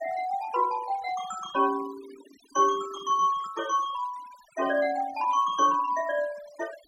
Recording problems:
noise reduction artefacts; signal-to-artefact ratio 19 dB

